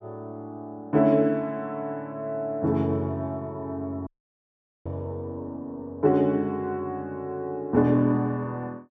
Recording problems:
audio cutting out; at 4 s for 1 s

